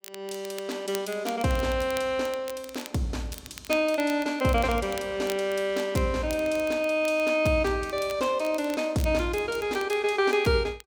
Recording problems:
crackling; vinyl, SNR 18 dB

